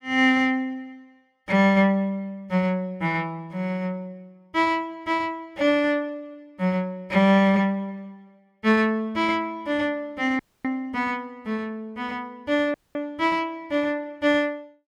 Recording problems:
audio cutting out; at 10 s and at 13 s

